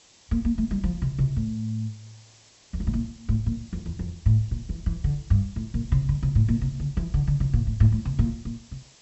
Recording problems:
treble missing; nothing above 7.8 kHz
hiss; SNR 26 dB

